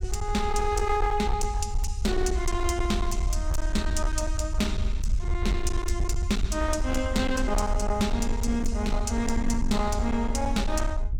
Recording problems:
distortion; hard clipping, signal-to-distortion ratio 12 dB
low-frequency rumble; below 66 Hz, SNR 2 dB

